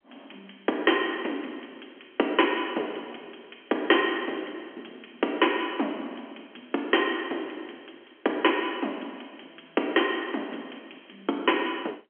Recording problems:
phone line; 240 Hz to 3.3 kHz, G.711

